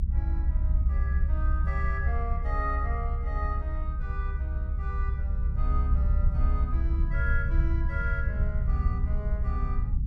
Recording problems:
low-frequency rumble; below 68 Hz, SNR -9 dB

